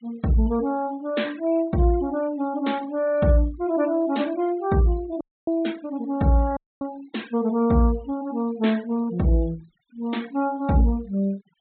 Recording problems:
treble cut off; nothing above 4 kHz
noise reduction artefacts; signal-to-artefact ratio 23 dB
dropout; at 5 s and at 6.5 s

